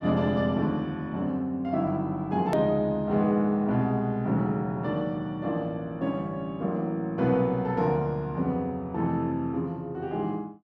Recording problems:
edit click; at 2.5 s

